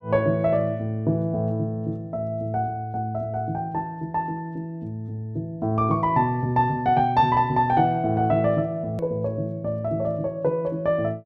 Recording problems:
hard cut with a click; at 9 s

